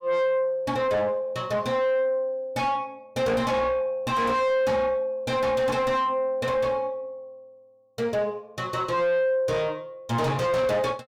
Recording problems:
distortion; soft clipping, signal-to-distortion ratio 6 dB

